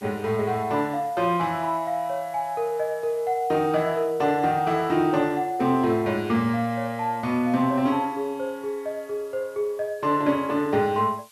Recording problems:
hiss; slope +3 dB per octave, SNR 27 dB

